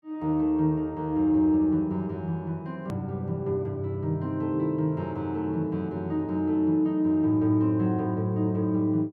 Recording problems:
hard cut with a click; at 3 s

